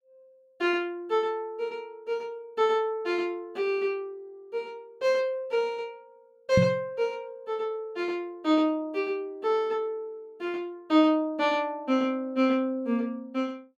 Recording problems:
microphone bump; at 6.5 s; peak +8 dB vs average level

